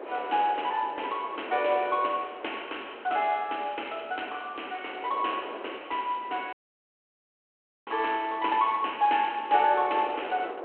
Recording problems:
phone line; 280 Hz to 3.3 kHz, G.726
wind on the microphone; below 860 Hz, SNR 14 dB
dropout; at 6.5 s for 1.5 s

